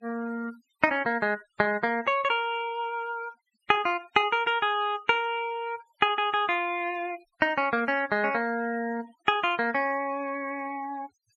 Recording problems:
noise reduction artefacts; signal-to-artefact ratio 24 dB

